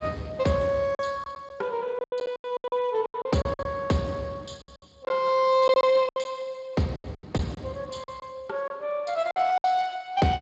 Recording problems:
lossy codec; Speex, log-spectral distance 4 dB, nothing above 7.3 kHz
packet loss; 12% of the sound replaced, filled with silence

